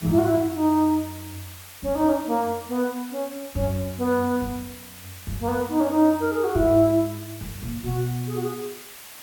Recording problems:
hiss; slope 0 dB per octave, SNR 17 dB

